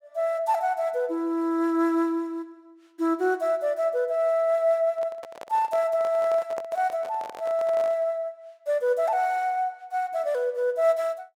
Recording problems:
microphone handling noise; from 5 to 8 s; peak -6 dB vs average level

